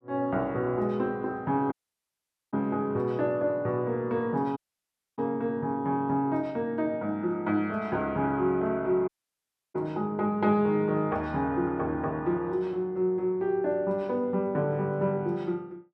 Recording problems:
dropout; at 1.5 s for 1 s, at 4.5 s for 0.5 s and at 9 s for 0.5 s

